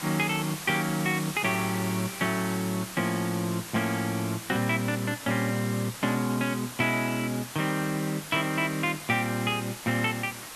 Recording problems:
background hiss; slope -1 dB per octave, SNR 10 dB

